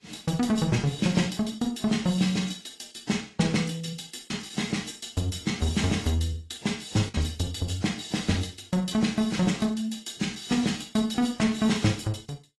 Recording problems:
codec artefacts; AAC, log-spectral distance 5 dB, nothing above 11.6 kHz
lost packets; 0.9% of the sound replaced, filled with the last packet

